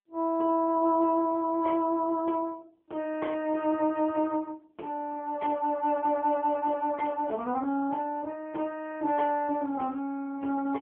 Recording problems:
phone line; 280 Hz to 3.3 kHz, AMR-NB

